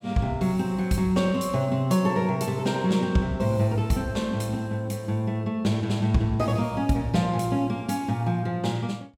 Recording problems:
none

